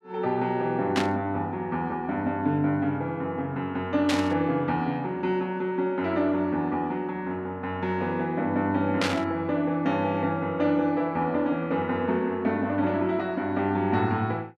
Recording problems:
burst of static; at 1 s, at 4 s and at 9 s; peak +3 dB vs average level

